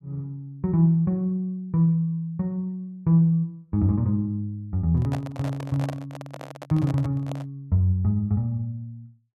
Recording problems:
handling noise; from 5 to 7.5 s; peak -6 dB vs average level

